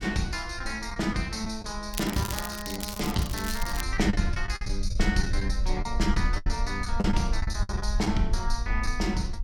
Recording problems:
rumble; below 56 Hz, SNR 3 dB
packet loss; 9% of the sound replaced, filled with the last packet
crackling; from 2 to 4 s; loose cable, SNR 7 dB

